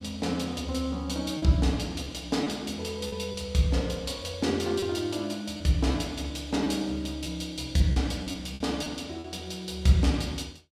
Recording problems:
packet loss; 5% of the sound replaced, filled with repeated pitch periods

